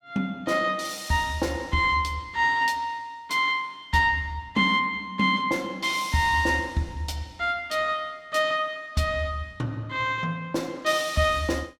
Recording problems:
none

